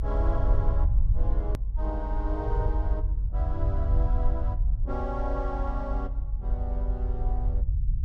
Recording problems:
rumble; below 60 Hz, SNR -8 dB
click at an edit; at 1.5 s

